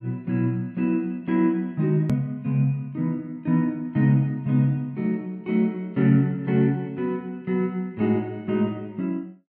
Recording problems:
click at an edit; at 2 s

